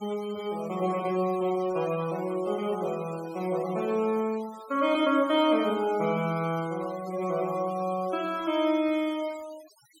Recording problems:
denoising artefacts; signal-to-artefact ratio 20 dB

